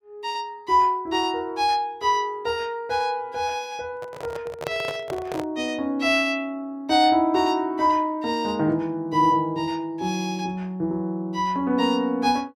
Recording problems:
microphone handling noise; from 4 to 5.5 s; peak -2 dB vs average level

